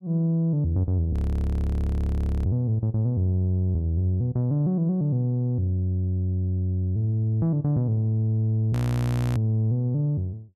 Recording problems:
audio freezing; at 1 s for 1.5 s and at 8.5 s for 0.5 s

